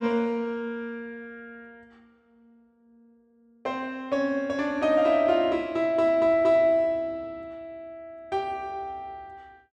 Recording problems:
none

